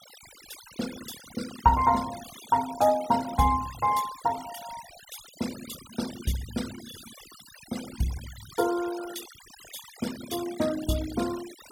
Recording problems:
noise reduction artefacts; signal-to-artefact ratio 14 dB

